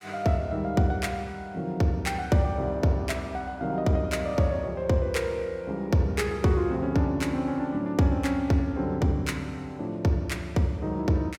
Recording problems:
none

